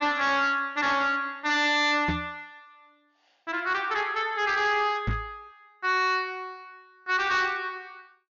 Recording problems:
treble cut off; nothing above 6.8 kHz
distortion; hard clipping, signal-to-distortion ratio 10 dB
microphone thump; at 2 s and at 5 s; peak +1 dB vs average level

